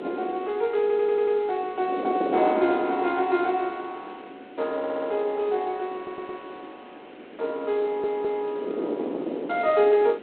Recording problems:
phone line; 240 Hz to 3.8 kHz, G.726
hiss; SNR 27 dB
wind noise; below 520 Hz, SNR 9 dB
stutter; 4 times, first at 1 s

